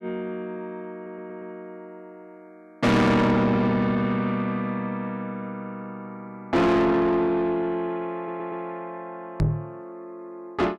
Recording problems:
distorted audio; soft clipping, signal-to-distortion ratio 6 dB
audio stuttering; at 1 s and at 8 s
microphone thump; at 9.5 s; peak +5 dB vs average level

